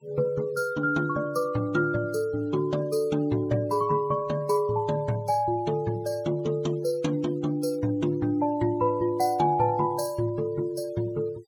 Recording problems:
denoising artefacts; signal-to-artefact ratio 25 dB

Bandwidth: 18.5 kHz